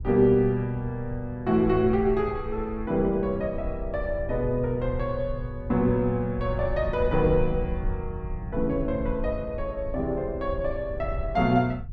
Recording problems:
low-frequency rumble; below 80 Hz, SNR 10 dB

